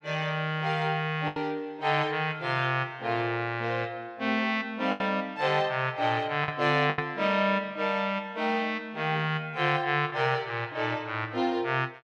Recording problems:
packet loss; 3% of the sound replaced, filled with the last packet

